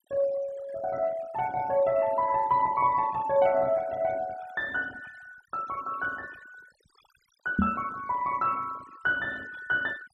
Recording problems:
denoising artefacts; signal-to-artefact ratio 20 dB
knock on the microphone; at 7.5 s; peak +6 dB vs average level

